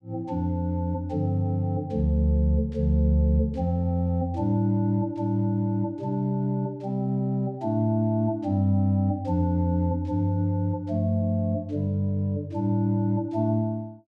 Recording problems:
none

